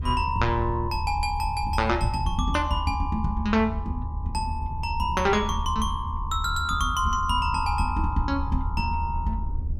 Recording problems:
rumble; below 78 Hz, SNR 5 dB

